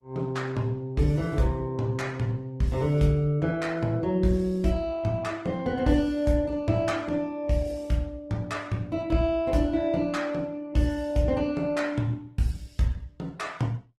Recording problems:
codec artefacts; Opus, log-spectral distance 2 dB, nothing above 17.7 kHz

